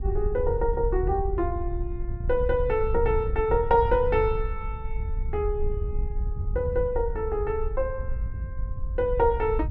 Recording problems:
wind on the microphone; below 72 Hz, SNR 5 dB

